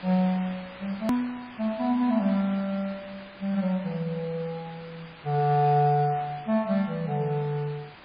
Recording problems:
lossy codec; MP3, log-spectral distance 3 dB, nothing above 15.6 kHz
hiss; SNR 18 dB
click at an edit; at 1 s

